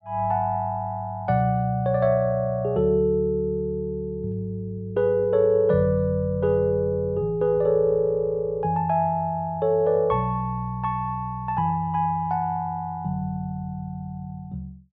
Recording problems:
none

